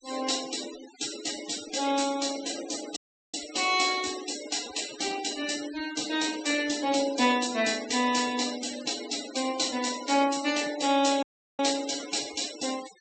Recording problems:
low-pass filter; nothing above 8 kHz
denoising artefacts; signal-to-artefact ratio 12 dB
audio cutting out; at 3 s and at 11 s

